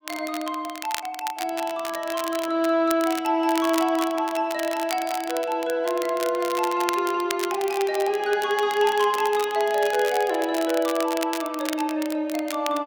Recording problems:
crackling; vinyl, SNR 11 dB

